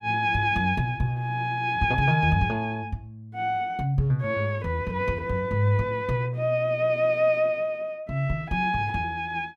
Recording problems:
none

